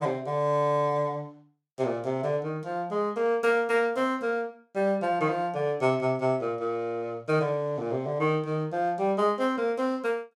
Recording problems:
none

